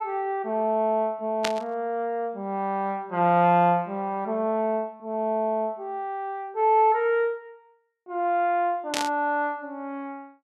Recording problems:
burst of static; at 1.5 s and at 9 s; peak +2 dB vs average level

